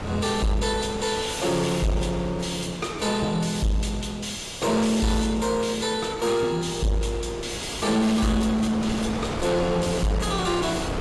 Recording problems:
lossy codec; AAC, log-spectral distance 4 dB, nothing above 12 kHz
distortion; soft clipping, signal-to-distortion ratio 7 dB
wind on the microphone; below 1 kHz, SNR 10 dB

